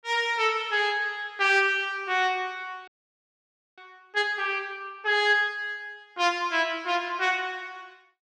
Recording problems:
frozen audio; at 3 s for 1 s

